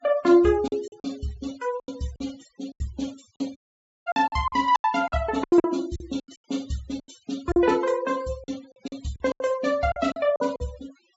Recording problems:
treble cut off; nothing above 8 kHz
denoising artefacts; signal-to-artefact ratio 21 dB
lost packets; 14% of the sound replaced, filled with silence
audio cutting out; at 3.5 s

